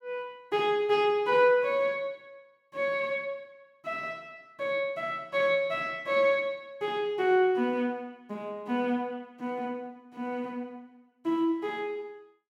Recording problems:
none

